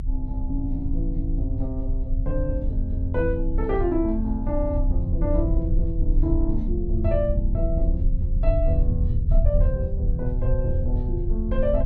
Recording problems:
rumble; below 72 Hz, strongest tone 32 Hz, SNR -2 dB

